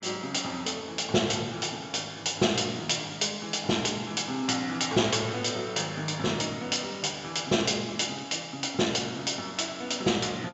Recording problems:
treble cut off; nothing above 7.5 kHz

